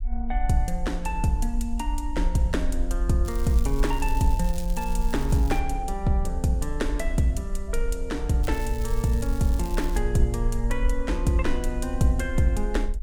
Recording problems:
rumble; below 46 Hz, SNR 3 dB
crackling; from 3.5 to 5.5 s and from 8.5 to 10 s; loose cable, SNR 17 dB

